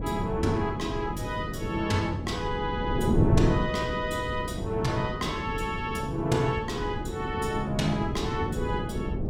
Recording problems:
wind noise; below 330 Hz, SNR 2 dB

